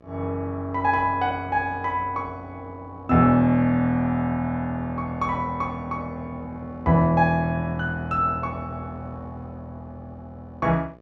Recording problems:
electrical hum; 60 Hz, harmonics up to 1.9 kHz, SNR 26 dB

